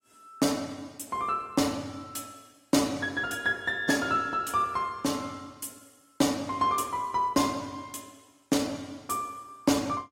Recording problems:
codec artefacts; AAC, log-spectral distance 3 dB, nothing above 16 kHz

